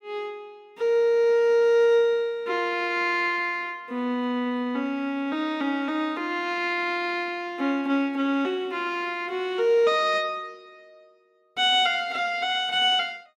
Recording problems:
none

